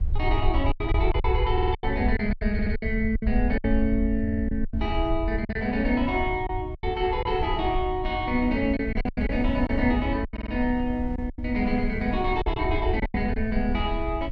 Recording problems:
low-frequency rumble; below 72 Hz, SNR 5 dB
wind on the microphone; below 160 Hz, SNR 14 dB
lost packets; 10% of the sound replaced, filled with silence
stutter; 4 times, first at 1.5 s

